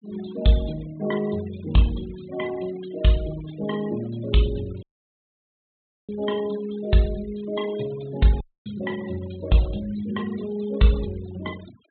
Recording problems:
low-pass filter; nothing above 4 kHz
noise reduction artefacts; signal-to-artefact ratio 18 dB
audio cutting out; at 5 s for 1.5 s and at 8.5 s

